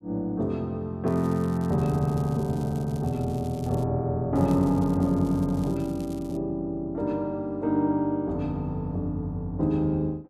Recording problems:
crackling; from 1 to 4 s and from 4.5 to 6.5 s; loose cable, SNR 25 dB

